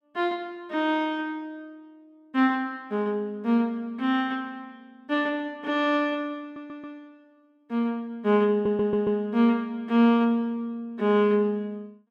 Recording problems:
stutter; at 6.5 s and at 8.5 s

